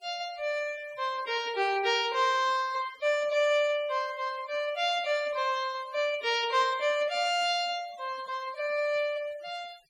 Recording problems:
noise reduction artefacts; signal-to-artefact ratio 22 dB

